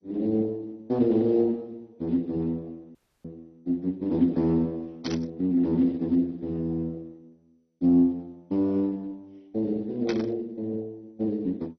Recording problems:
lossy compression; Speex, then MP2, log-spectral distance 2 dB, nothing above 5.3 kHz
audio cutting out; at 3 s
static burst; at 5 s and at 10 s; peak -2 dB vs average level

